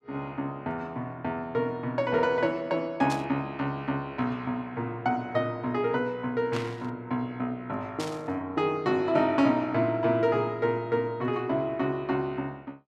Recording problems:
burst of static; at 3 s, at 6.5 s and at 8 s; peak -4 dB vs average level

